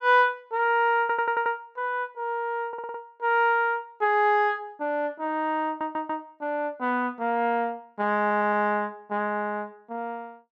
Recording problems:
audio stuttering; 4 times, first at 1 s

